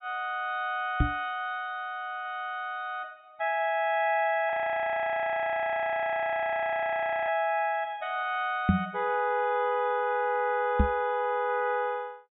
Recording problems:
low-pass filter; nothing above 4 kHz
microphone bump; at 1 s, at 8.5 s and at 11 s; peak +9 dB vs average level
frozen audio; at 4.5 s for 3 s

